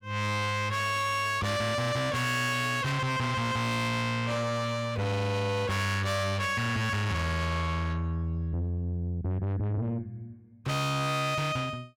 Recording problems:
distorted audio; soft clipping, signal-to-distortion ratio 6 dB

